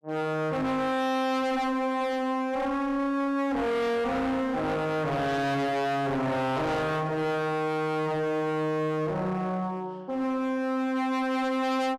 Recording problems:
distorted audio; hard clipping, uneven, signal-to-distortion ratio 5 dB

